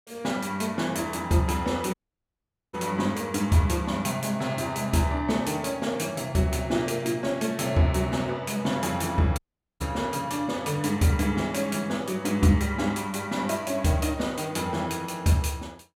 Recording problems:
dropout; at 2 s for 1 s and at 9.5 s

